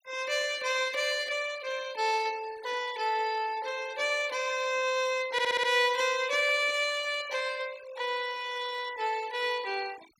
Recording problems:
denoising artefacts; signal-to-artefact ratio 19 dB
stutter; at 5.5 s

